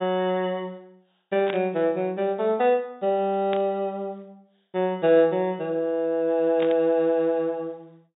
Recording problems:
low-pass filter; nothing above 4 kHz
static burst; at 1.5 s, at 3.5 s and at 6.5 s; peak -5 dB vs average level

